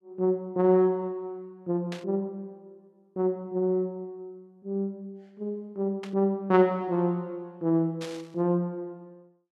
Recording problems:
static burst; at 2 s, at 6 s and at 8 s; peak -8 dB vs average level

